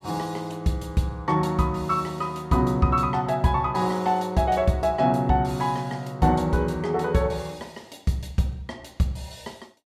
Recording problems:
none

